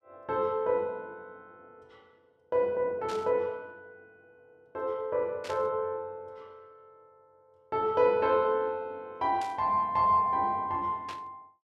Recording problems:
burst of static; 4 times, first at 3 s; peak -10 dB vs average level

